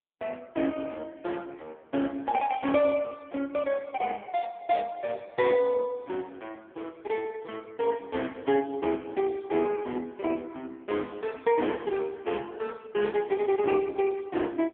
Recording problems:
phone line; 240 Hz to 3.3 kHz, AMR-NB

